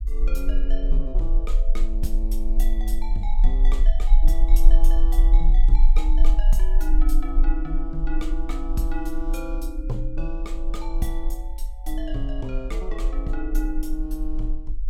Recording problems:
rumble; below 34 Hz, strongest tone 20 Hz, SNR -8 dB

